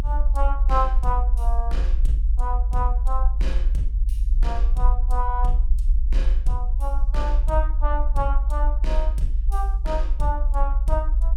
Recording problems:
low-frequency rumble; below 52 Hz, strongest tone 30 Hz, SNR -6 dB

